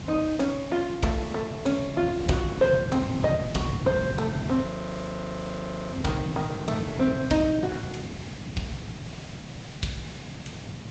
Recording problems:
low-pass filter; nothing above 7.8 kHz
lossy codec; Opus, log-spectral distance 3 dB
hiss; SNR 16 dB
wind on the microphone; below 220 Hz, SNR 6 dB
frozen audio; at 4.5 s for 1 s

